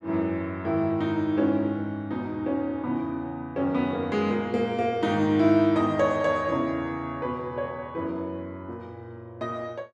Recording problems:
none

